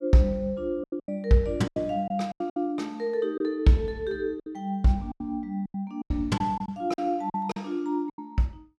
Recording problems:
packet loss; 11% of the sound replaced, filled with silence

